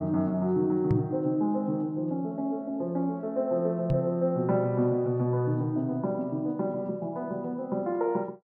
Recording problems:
microphone thump; at 1 s and at 4 s; peak +5 dB vs average level

